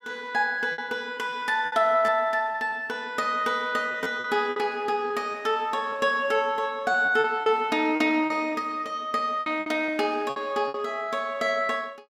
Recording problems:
lost packets; 7% of the sound replaced, filled with repeated pitch periods

